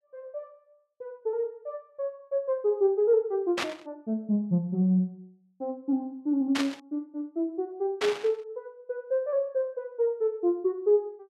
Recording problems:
static burst; at 3.5 s, at 6.5 s and at 8 s; peak +2 dB vs average level

